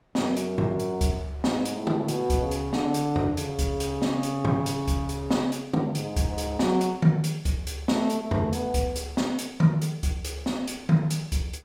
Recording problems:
wind on the microphone; below 1.1 kHz, SNR 26 dB

